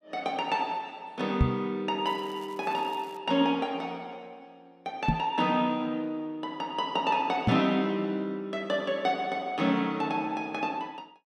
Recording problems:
microphone thump; at 1.5 s, at 5 s and at 7.5 s; peak +9 dB vs average level
crackling; from 2 to 3 s; loose cable, SNR 27 dB

